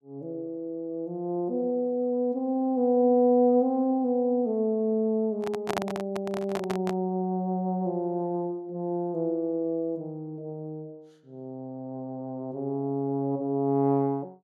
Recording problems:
microphone handling noise; from 5.5 to 7 s; peak +3 dB vs average level

